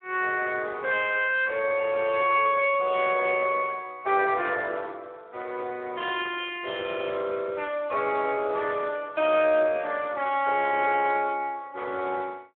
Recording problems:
phone line; 280 Hz to 3.7 kHz, Speex

